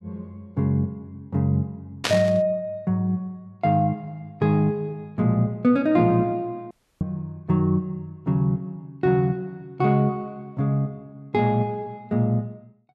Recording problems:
burst of static; at 2 s; peak +4 dB vs average level
audio cutting out; at 6.5 s

